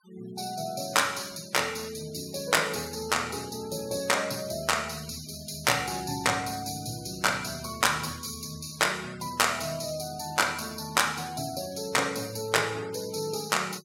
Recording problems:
denoising artefacts; signal-to-artefact ratio 20 dB

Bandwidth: 16.5 kHz